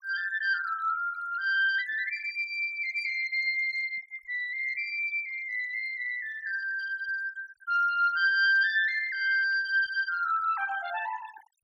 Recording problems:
denoising artefacts; signal-to-artefact ratio 18 dB

